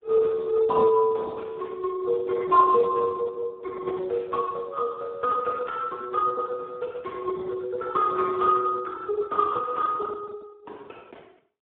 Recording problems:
telephone audio; 260 Hz to 2 kHz, Speex

